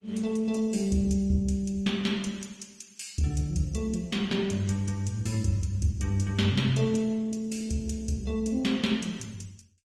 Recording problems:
lossy codec; Opus, then Opus, log-spectral distance 3 dB, nothing above 17.7 kHz

